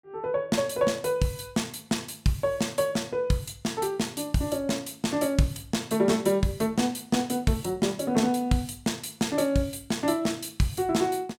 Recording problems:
none

